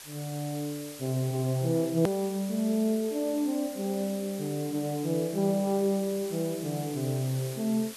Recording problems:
hiss; slope +1 dB per octave, SNR 14 dB
click at an edit; at 2 s

